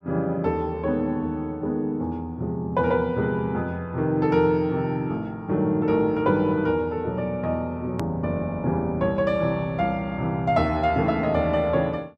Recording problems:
click at an edit; at 8 s

